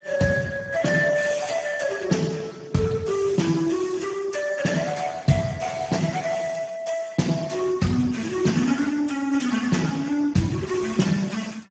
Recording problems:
codec artefacts; Speex, then Speex, log-spectral distance 6 dB, nothing above 7.3 kHz

